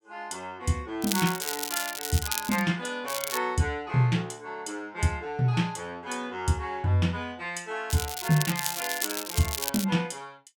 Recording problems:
crackle; from 1 to 2.5 s, at 3 s and from 8 to 10 s; loose cable, SNR 3 dB

